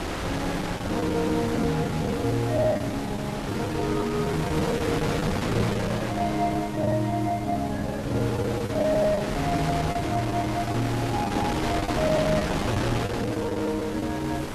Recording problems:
background hiss; slope -3 dB per octave, SNR 20 dB
wind noise; below 1.7 kHz, SNR 4 dB
packet loss; 13% of the sound replaced, filled with the last packet

